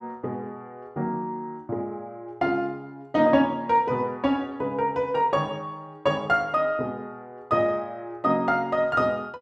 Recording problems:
none

